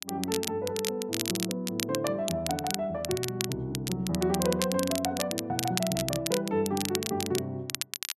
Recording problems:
crackling; vinyl, SNR 3 dB

